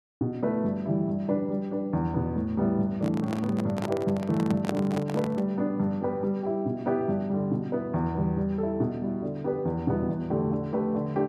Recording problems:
handling noise; from 3 to 5.5 s; peak +1 dB vs average level

